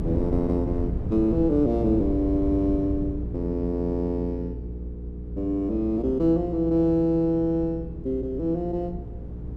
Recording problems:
hum; 60 Hz, harmonics up to 480 Hz, SNR 10 dB
wind on the microphone; below 170 Hz, SNR 11 dB

